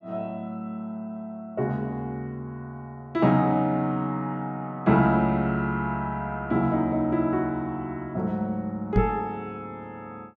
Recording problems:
microphone bump; at 9 s; peak +7 dB vs average level

